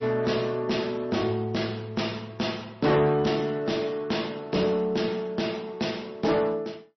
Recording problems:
lossy compression; MP3, log-spectral distance 3 dB, nothing above 5.8 kHz
distortion; soft clipping, signal-to-distortion ratio 10 dB

